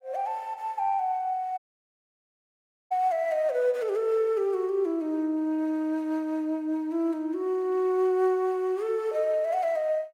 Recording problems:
audio cutting out; at 1.5 s for 1.5 s

